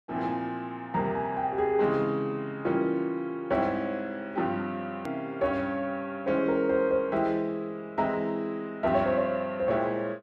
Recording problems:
hard cut with a click; at 5 s

